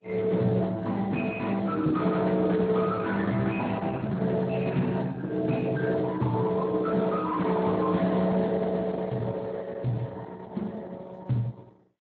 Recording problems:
lossy compression; Opus, then Speex, log-spectral distance 3 dB
distortion; soft clipping, signal-to-distortion ratio 10 dB

